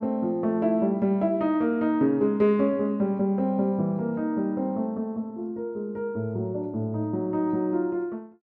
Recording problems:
none

